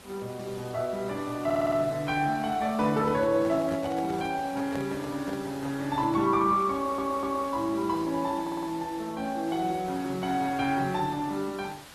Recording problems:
codec artefacts; Opus, log-spectral distance 4 dB
background hiss; slope -2 dB per octave, SNR 18 dB
stutter; at 1.5 s, at 6.5 s and at 8.5 s
handling noise; from 2.5 to 6.5 s; peak -6 dB vs average level

